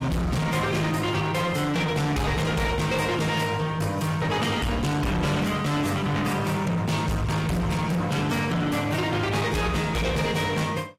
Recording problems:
codec artefacts; AAC, log-spectral distance 3 dB, nothing above 15.1 kHz
distortion; hard clipping, signal-to-distortion ratio 7 dB

